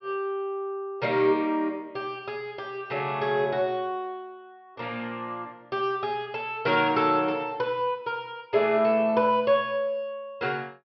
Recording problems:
treble missing; nothing above 5.5 kHz

